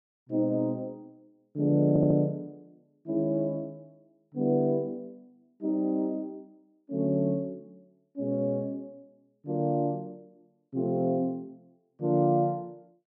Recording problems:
audio stuttering; at 2 s

